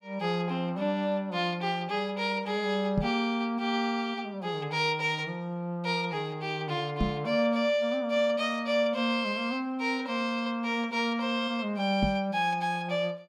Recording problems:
knock on the microphone; at 3 s, at 7 s and at 12 s; peak +4 dB vs average level

